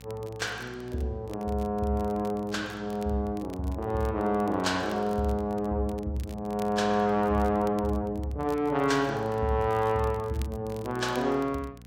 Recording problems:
electrical hum; 60 Hz, harmonics up to 1 kHz, SNR 20 dB
crackle; vinyl, SNR 25 dB

